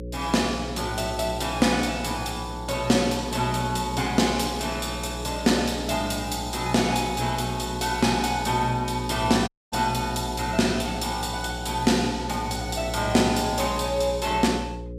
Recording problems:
electrical hum; 60 Hz, harmonics up to 540 Hz, SNR 10 dB
audio cutting out; at 9.5 s

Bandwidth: 15.5 kHz